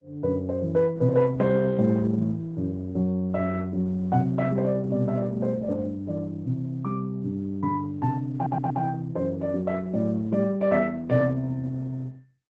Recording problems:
lossy codec; Opus, then Opus, log-spectral distance 2 dB
audio stuttering; at 8.5 s

